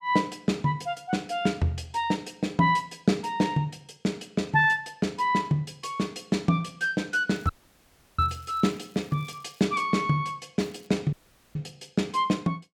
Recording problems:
crackle; from 7.5 to 9.5 s and at 11 s; loose cable, SNR 29 dB
dropout; at 7.5 s for 0.5 s and at 11 s

